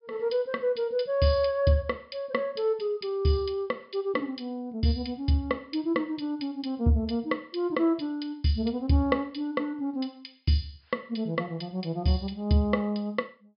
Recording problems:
treble cut off; nothing above 5.5 kHz

